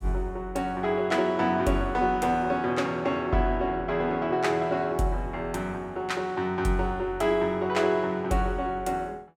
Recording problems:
none

